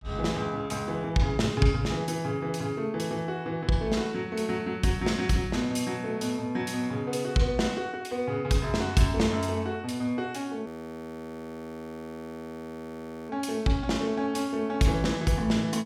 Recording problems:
frozen audio; at 11 s for 2.5 s

